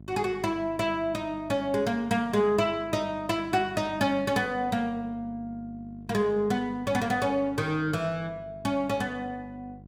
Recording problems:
hum; 50 Hz, harmonics up to 700 Hz, SNR 19 dB

